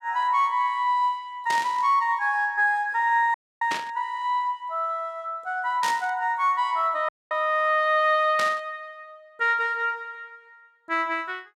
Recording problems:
static burst; 4 times, first at 1.5 s; peak -3 dB vs average level
audio cutting out; at 3.5 s and at 7 s

